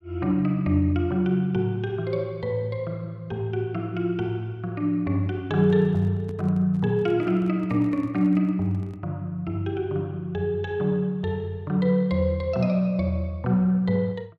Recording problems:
handling noise; from 5.5 to 9 s; peak -12 dB vs average level

